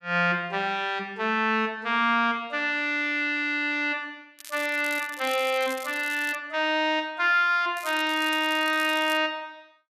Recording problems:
crackle; from 4.5 to 6.5 s and from 8 to 9 s; loose cable, SNR 17 dB

